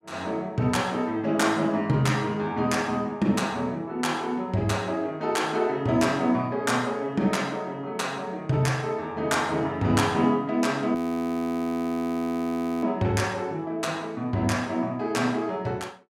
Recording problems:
audio freezing; at 11 s for 2 s

